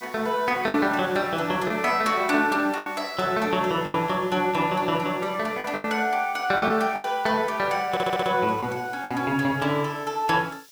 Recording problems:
hiss; slope +6 dB per octave, SNR 25 dB
lost packets; 6% of the sound replaced, filled with the last packet
stutter; at 8 s

